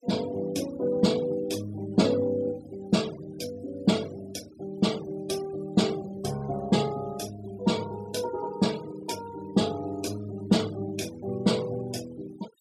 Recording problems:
denoising artefacts; signal-to-artefact ratio 17 dB

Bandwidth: 14.5 kHz